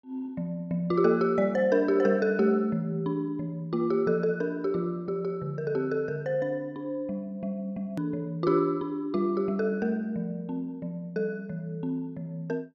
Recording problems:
click at an edit; at 8 s

